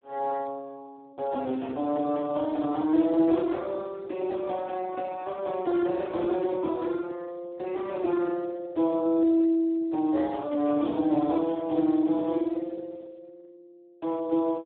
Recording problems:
telephone audio; 190 Hz to 3.5 kHz, Speex

